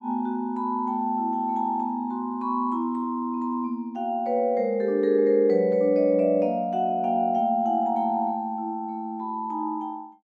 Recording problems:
none

